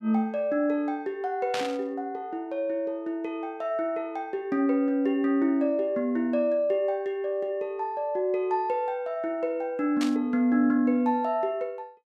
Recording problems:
burst of static; at 1.5 s and at 10 s; peak -1 dB vs average level

